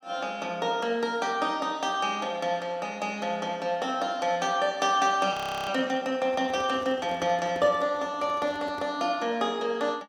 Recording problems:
audio freezing; at 5.5 s
microphone handling noise; from 6.5 to 9 s; peak -9 dB vs average level

